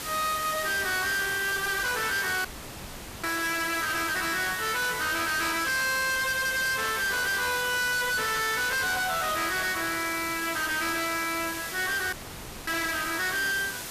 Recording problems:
distorted audio; hard clipping, uneven, signal-to-distortion ratio 5 dB
hiss; slope -1 dB per octave, SNR 7 dB
dropout; at 2.5 s for 1 s and at 12 s for 0.5 s

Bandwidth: 14.5 kHz